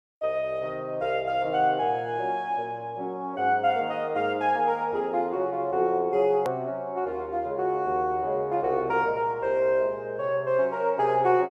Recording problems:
click at an edit; at 6.5 s

